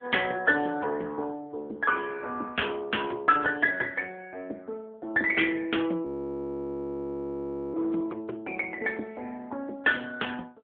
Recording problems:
telephone audio; 260 Hz to 3.4 kHz, AMR-NB
frozen audio; at 6 s for 1.5 s

